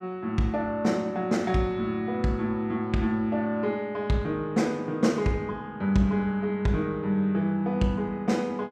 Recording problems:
none

